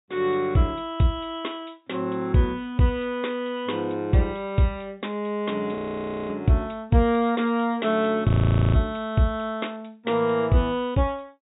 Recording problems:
treble missing; nothing above 4 kHz
audio freezing; at 5.5 s for 0.5 s and at 8.5 s

